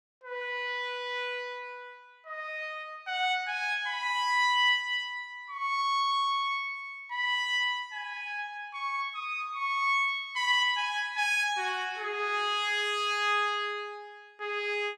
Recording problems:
none

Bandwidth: 15.5 kHz